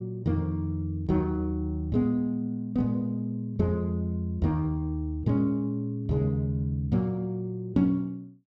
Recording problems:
none

